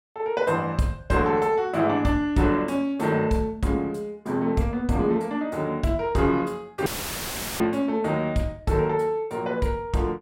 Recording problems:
dropout; at 7 s for 0.5 s; filled with static

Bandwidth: 16.5 kHz